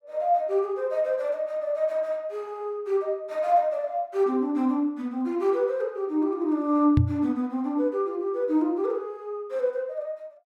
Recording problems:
microphone bump; at 7 s; peak +8 dB vs average level

